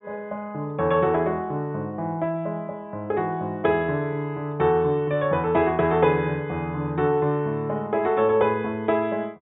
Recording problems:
treble missing; nothing above 4 kHz

